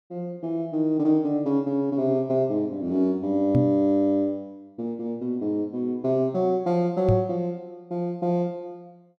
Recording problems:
microphone thump; at 3.5 s and at 7 s; peak +6 dB vs average level

